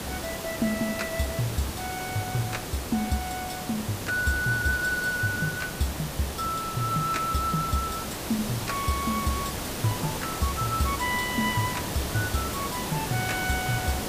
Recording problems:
hiss; slope -4 dB per octave, SNR 4 dB

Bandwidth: 15 kHz